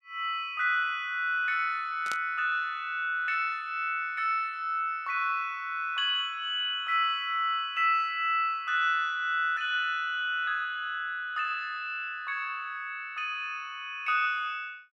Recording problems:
static burst; at 2 s; peak -5 dB vs average level

